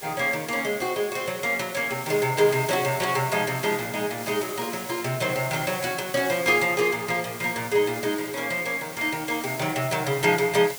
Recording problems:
background hiss; SNR 12 dB

